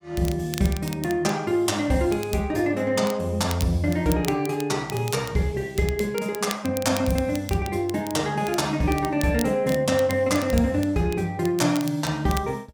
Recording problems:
crackle; vinyl, SNR 15 dB

